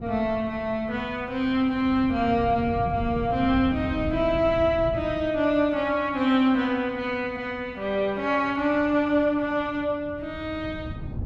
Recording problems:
wind noise; below 180 Hz, SNR 13 dB

